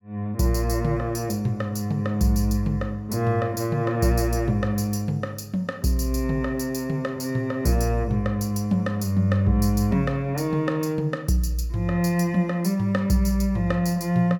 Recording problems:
none

